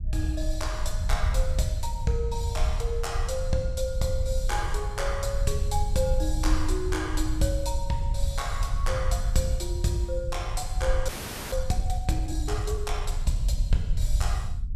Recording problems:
rumble; below 70 Hz, SNR 0 dB
frozen audio; at 11 s

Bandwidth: 14.5 kHz